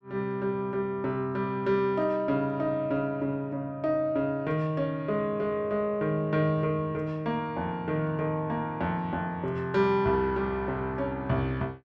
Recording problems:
none

